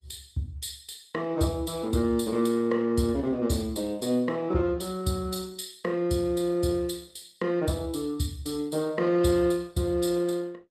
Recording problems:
lossy compression; Opus, log-spectral distance 4 dB, nothing above 14.7 kHz

